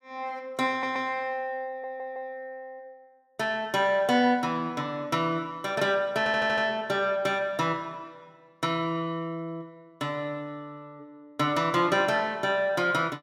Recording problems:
stutter; at 0.5 s, at 1.5 s and at 6 s

